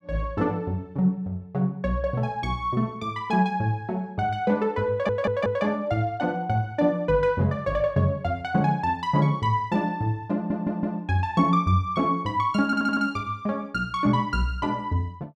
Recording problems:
audio stuttering; at 5 s, at 10 s and at 13 s

